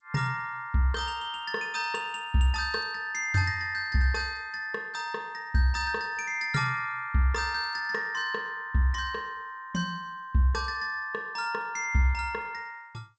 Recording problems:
lossy codec; G.722, log-spectral distance 2 dB, nothing above 6.9 kHz

